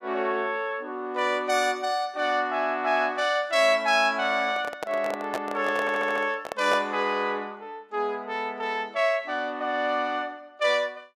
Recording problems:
handling noise; from 4.5 to 7 s; peak -1 dB vs average level
stutter; at 6 s

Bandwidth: 15 kHz